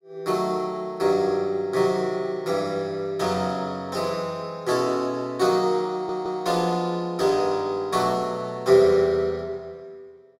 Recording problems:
stutter; at 6 s

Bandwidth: 16 kHz